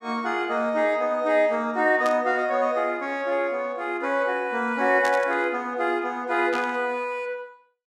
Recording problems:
static burst; at 2 s, at 5 s and at 6.5 s; peak -7 dB vs average level

